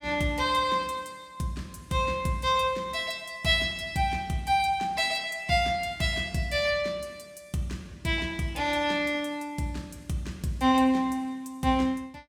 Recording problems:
none

